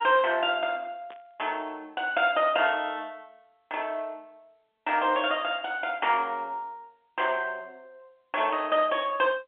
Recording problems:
phone line; 220 Hz to 3.4 kHz, G.711
burst of static; at 1 s and at 2.5 s; peak -16 dB vs average level

